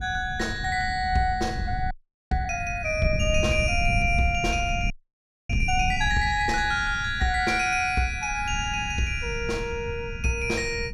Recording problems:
wind noise; below 120 Hz, SNR 8 dB
audio freezing; at 2 s and at 5 s for 0.5 s

